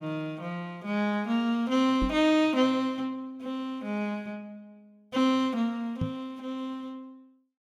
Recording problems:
knock on the microphone; at 2 s and at 6 s; peak +2 dB vs average level

